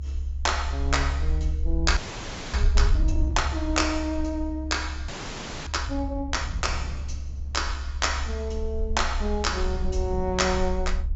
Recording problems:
treble cut off; nothing above 7.5 kHz
rumble; below 70 Hz, SNR 2 dB
wind noise; below 130 Hz, SNR 13 dB
audio freezing; at 2 s for 0.5 s and at 5 s for 0.5 s

